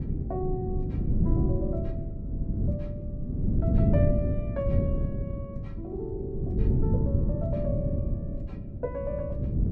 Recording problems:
wind on the microphone; below 180 Hz, SNR -7 dB

